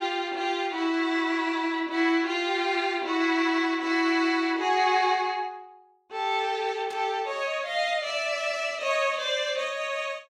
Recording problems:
static burst; at 7 s; peak -15 dB vs average level

